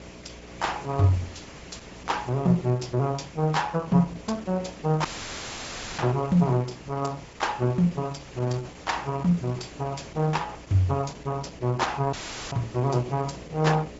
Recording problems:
low-pass filter; nothing above 7.6 kHz
codec artefacts; Opus, log-spectral distance 7 dB
hum; 60 Hz, harmonics up to 780 Hz, SNR 21 dB
hiss; slope -3 dB per octave, SNR 20 dB
dropout; at 5 s for 1 s and at 12 s; filled with static

